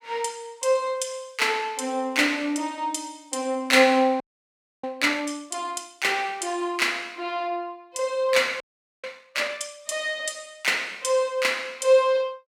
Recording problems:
frozen audio; at 4 s for 0.5 s and at 8.5 s

